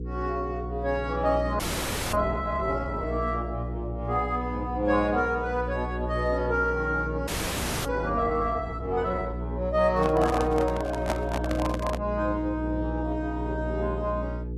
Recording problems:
codec artefacts; AAC, log-spectral distance 2 dB
hum; 60 Hz, harmonics up to 480 Hz, SNR 6 dB
frozen audio; at 1.5 s for 0.5 s and at 7.5 s for 0.5 s
handling noise; from 10 to 12 s; peak +3 dB vs average level

